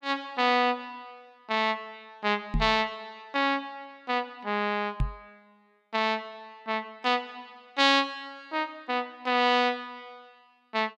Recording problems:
knock on the microphone; at 2.5 s and at 5 s; peak +2 dB vs average level

